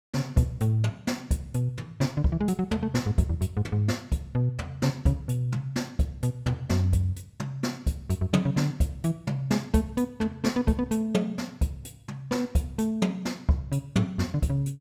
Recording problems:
none

